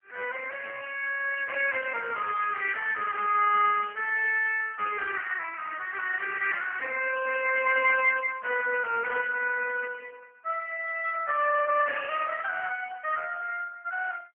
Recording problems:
phone line; 390 Hz to 2.8 kHz, AMR-NB

